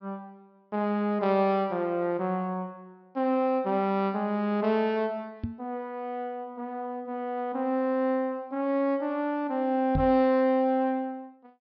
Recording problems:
low-pass filter; nothing above 5.5 kHz
knock on the microphone; at 5.5 s and at 10 s; peak +2 dB vs average level

